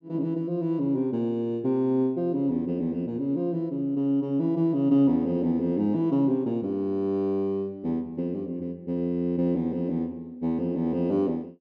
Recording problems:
none

